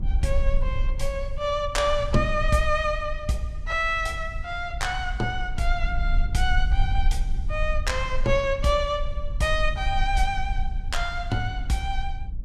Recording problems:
rumble; below 52 Hz, SNR 4 dB

